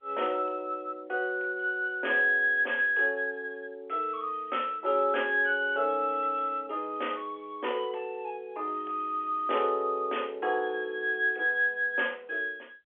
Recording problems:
telephone audio; 320 Hz to 3.4 kHz, G.711

